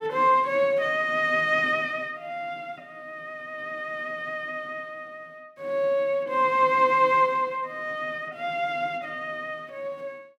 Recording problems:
none

